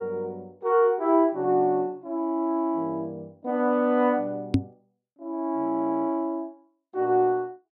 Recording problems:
microphone thump; at 4.5 s; peak +7 dB vs average level

